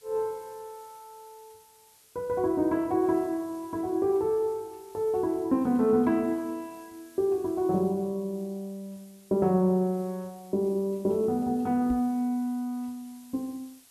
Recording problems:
background hiss; slope 0 dB per octave, SNR 27 dB
microphone bump; at 12 s; peak -3 dB vs average level

